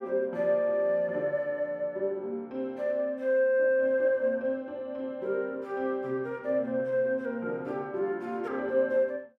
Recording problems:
none

